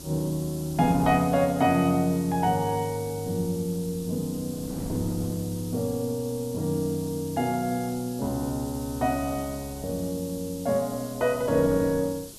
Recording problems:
background hiss; SNR 16 dB
wind on the microphone; below 350 Hz, SNR 17 dB

